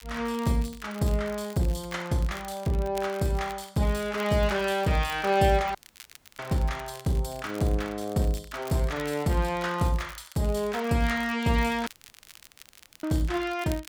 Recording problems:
crackle; vinyl, SNR 20 dB
audio cutting out; at 6 s for 0.5 s and at 12 s for 1 s

